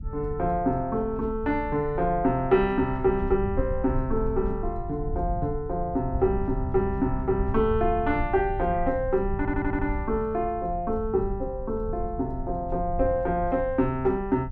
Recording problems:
low-frequency rumble; below 90 Hz, SNR 8 dB
audio stuttering; at 9.5 s

